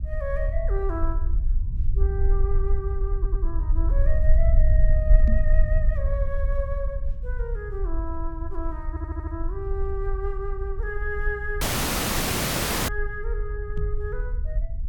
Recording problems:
rumble; below 58 Hz, SNR -7 dB
stutter; at 3 s and at 9 s
microphone bump; at 5.5 s and at 14 s; peak +6 dB vs average level
audio cutting out; at 12 s for 1.5 s

